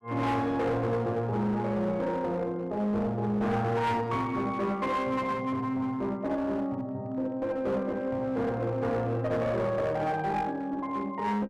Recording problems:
distortion; hard clipping, uneven, signal-to-distortion ratio 10 dB

